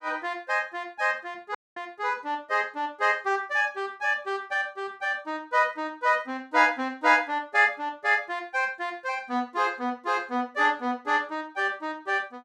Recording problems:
dropout; at 1.5 s

